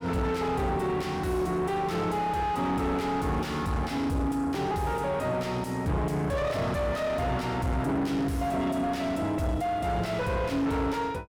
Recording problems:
distorted audio; soft clipping, signal-to-distortion ratio 6 dB

